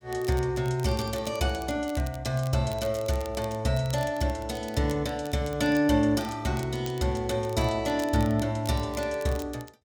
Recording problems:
crackling; vinyl, SNR 20 dB

